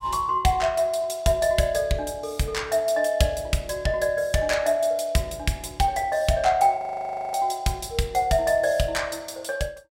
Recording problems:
frozen audio; at 7 s for 0.5 s

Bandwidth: 16 kHz